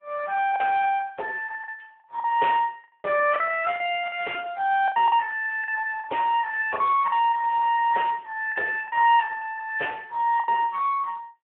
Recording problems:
telephone audio; 370 Hz to 3.3 kHz, Speex
lost packets; 7% of the sound replaced, filled with the last packet

